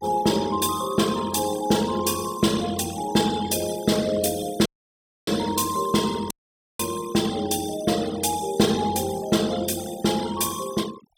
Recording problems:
denoising artefacts; signal-to-artefact ratio 15 dB
audio cutting out; at 4.5 s for 0.5 s and at 6.5 s

